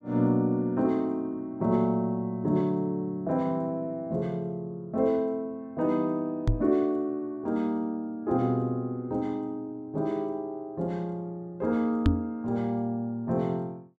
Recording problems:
microphone bump; at 6.5 s and at 12 s; peak +8 dB vs average level

